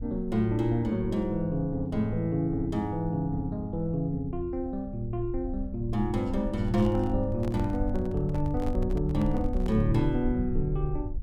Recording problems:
rumble; below 62 Hz, SNR 9 dB
microphone handling noise; from 6.5 to 10 s; peak -10 dB vs average level

